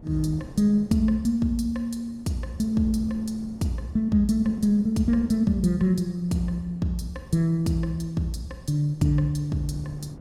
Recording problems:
wind on the microphone; below 290 Hz, SNR 21 dB

